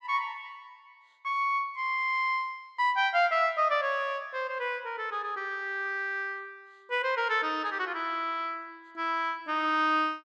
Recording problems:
none

